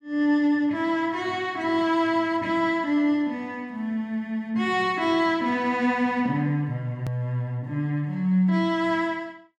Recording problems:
click at an edit; at 7 s

